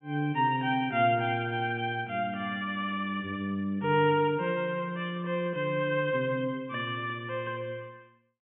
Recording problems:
low-pass filter; nothing above 3.3 kHz

